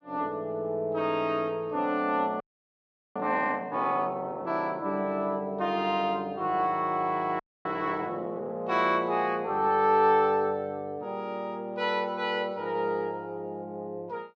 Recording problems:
frozen audio; at 2.5 s for 1 s and at 7.5 s

